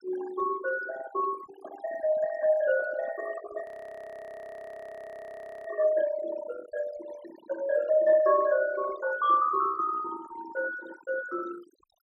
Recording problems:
noise reduction artefacts; signal-to-artefact ratio 14 dB
audio freezing; at 3.5 s for 2 s

